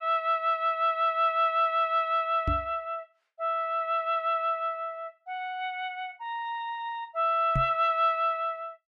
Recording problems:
microphone thump; at 2.5 s and at 7.5 s; peak +1 dB vs average level

